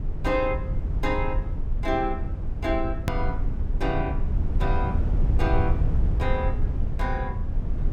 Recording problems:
rumble; below 82 Hz, SNR -2 dB
edit click; at 3 s

